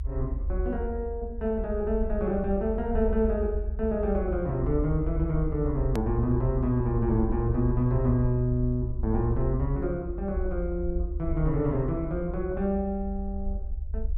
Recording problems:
low-frequency rumble; below 70 Hz, strongest tone 46 Hz, SNR 5 dB
edit click; at 6 s

